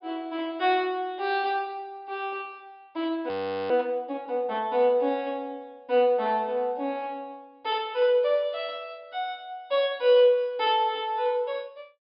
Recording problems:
low-pass filter; nothing above 5.5 kHz
frozen audio; at 3.5 s

